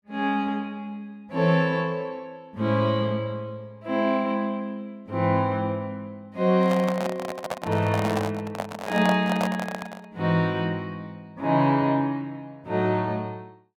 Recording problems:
handling noise; from 6.5 to 10 s; peak +1 dB vs average level

